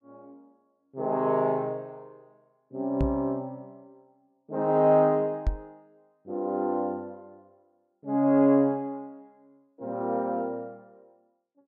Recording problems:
microphone bump; at 3 s and at 5.5 s; peak +2 dB vs average level

